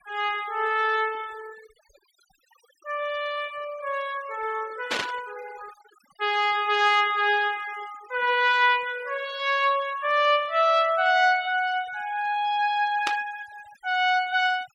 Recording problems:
denoising artefacts; signal-to-artefact ratio 21 dB
static burst; at 5 s and at 13 s; peak +1 dB vs average level

